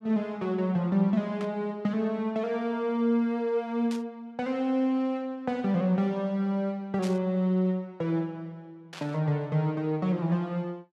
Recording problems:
static burst; 4 times, first at 1.5 s; peak -8 dB vs average level

